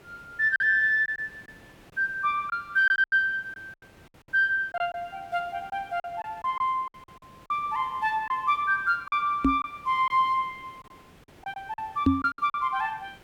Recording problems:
hiss; slope -5 dB per octave, SNR 27 dB
packet loss; 8% of the sound replaced, filled with silence
knock on the microphone; at 9.5 s and at 12 s; peak +8 dB vs average level

